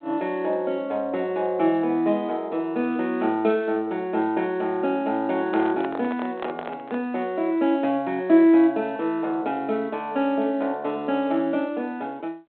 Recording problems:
phone line; 240 Hz to 3.9 kHz, G.726
handling noise; from 5.5 to 7 s; peak -5 dB vs average level

